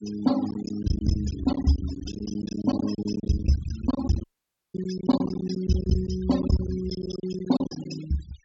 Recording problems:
low-pass filter; nothing above 8 kHz
denoising artefacts; signal-to-artefact ratio 14 dB
packet loss; 16% of the sound replaced, filled with silence
dropout; at 4 s for 0.5 s

